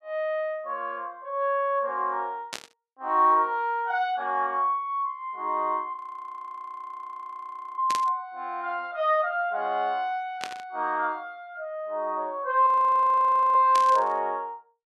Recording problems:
static burst; 4 times, first at 2.5 s; peak -3 dB vs average level
frozen audio; at 6 s for 2 s and at 13 s for 1 s

